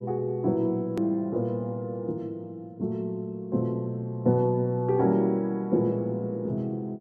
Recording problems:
edit click; at 1 s

